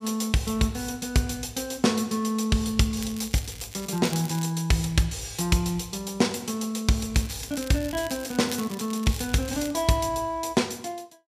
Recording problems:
crackle; from 3 to 4.5 s and from 7 to 9.5 s; loose cable, SNR 14 dB

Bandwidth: 15 kHz